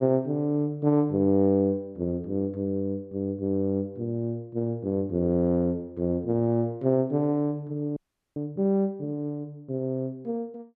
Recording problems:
audio freezing; at 8 s

